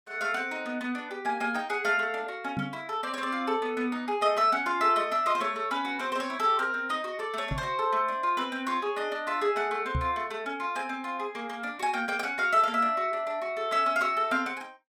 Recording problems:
microphone bump; at 2.5 s, at 7.5 s and at 10 s; peak +1 dB vs average level

